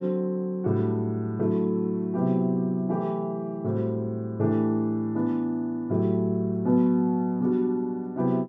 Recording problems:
none

